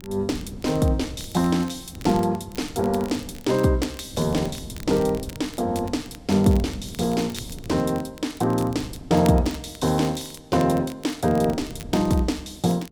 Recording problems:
wind on the microphone; below 220 Hz, SNR 17 dB
crackle; vinyl, SNR 21 dB

